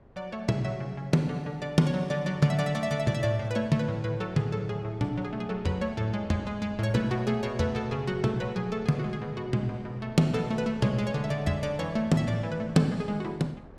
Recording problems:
wind noise; below 510 Hz, SNR 21 dB

